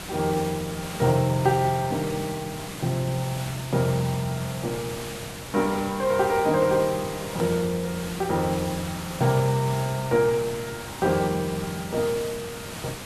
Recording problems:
electrical hum; 50 Hz, harmonics up to 1 kHz, SNR 24 dB
hiss; slope -3 dB per octave, SNR 10 dB
click at an edit; at 7.5 s

